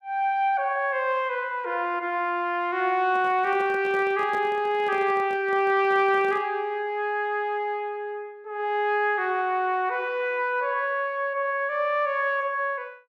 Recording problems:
handling noise; from 3 to 6.5 s; peak -9 dB vs average level

